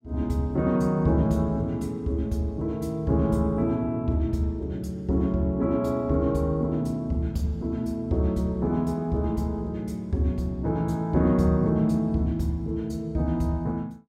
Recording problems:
none

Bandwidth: 16.5 kHz